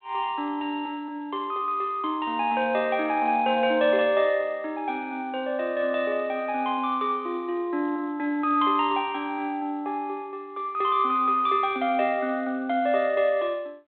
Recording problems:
telephone audio; 240 Hz to 3.7 kHz, G.726

